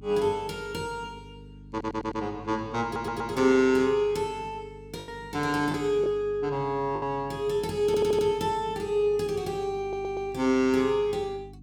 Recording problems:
hum; 50 Hz, harmonics up to 300 Hz, SNR 21 dB
lost packets; 1.9% of the sound replaced, filled with the last packet
stutter; 4 times, first at 1.5 s

